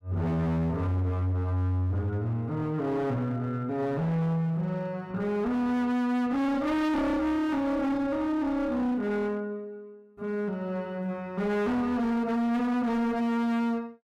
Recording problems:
distorted audio; hard clipping, signal-to-distortion ratio 7 dB

